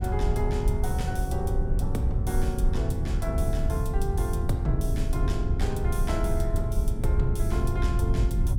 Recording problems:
rumble; below 92 Hz, SNR -4 dB

